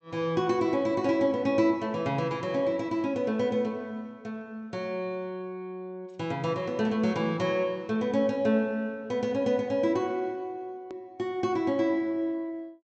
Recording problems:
treble cut off; nothing above 8 kHz
hard cut with a click; at 11 s

